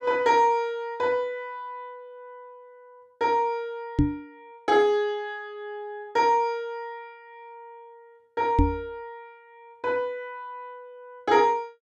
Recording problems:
knock on the microphone; at 4 s and at 8.5 s; peak +8 dB vs average level

